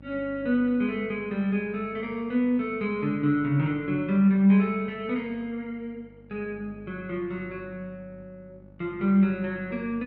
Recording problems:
electrical hum; 50 Hz, harmonics up to 900 Hz, SNR 24 dB

